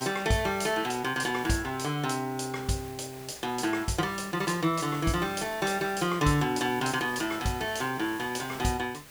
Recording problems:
background hiss; slope -2 dB per octave, SNR 16 dB

